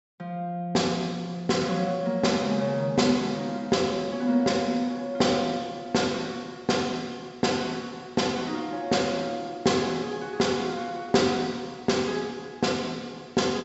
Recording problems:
treble cut off; nothing above 7.7 kHz

